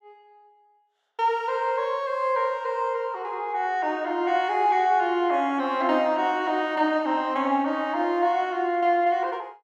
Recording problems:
none

